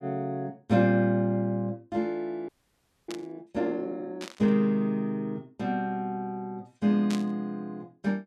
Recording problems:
audio freezing; at 2.5 s for 0.5 s
static burst; at 3 s, at 4 s and at 7 s; peak -5 dB vs average level

